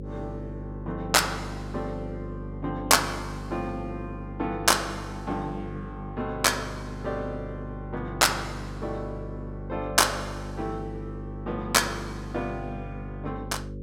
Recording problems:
electrical hum; 50 Hz, harmonics up to 550 Hz, SNR 9 dB

